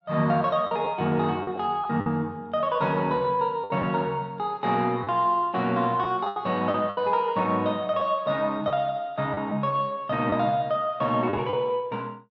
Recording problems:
lost packets; 5% of the sound replaced, filled with the last packet

